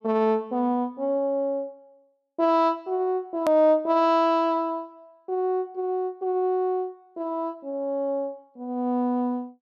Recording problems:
edit click; at 3.5 s

